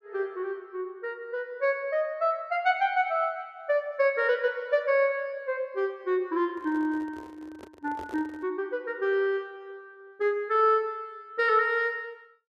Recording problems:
microphone handling noise; from 6.5 to 8.5 s; peak -10 dB vs average level

